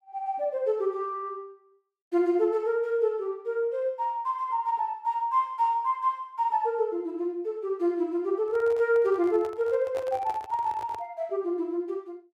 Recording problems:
microphone handling noise; from 8.5 to 11 s; peak -7 dB vs average level

